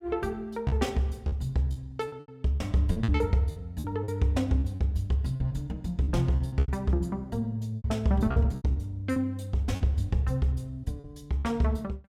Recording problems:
packet loss; 11% of the sound replaced, filled with repeated pitch periods

